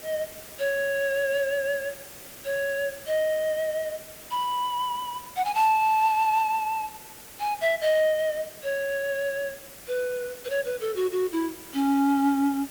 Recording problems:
hiss; SNR 16 dB

